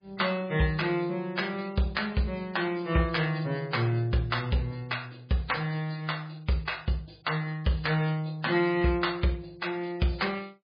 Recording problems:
codec artefacts; MP3, log-spectral distance 4 dB, nothing above 5 kHz

